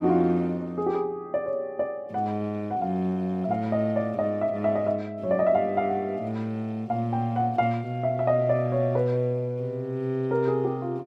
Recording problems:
none

